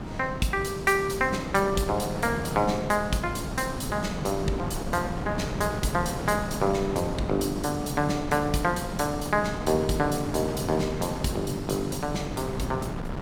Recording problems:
wind noise; below 560 Hz, SNR 6 dB

